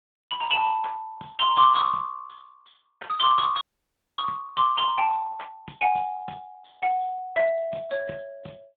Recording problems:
phone line; 240 Hz to 3.5 kHz, Speex
frozen audio; at 3.5 s for 0.5 s

